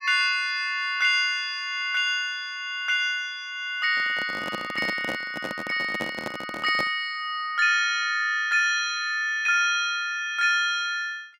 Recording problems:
microphone handling noise; from 4 to 7 s; peak -3 dB vs average level

